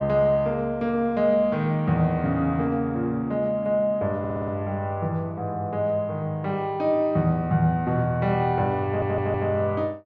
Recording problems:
audio stuttering; at 4 s and at 9 s

